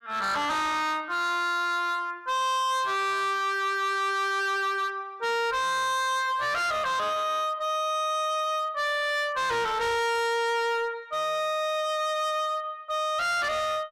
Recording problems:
distortion; hard clipping, uneven, signal-to-distortion ratio 7 dB

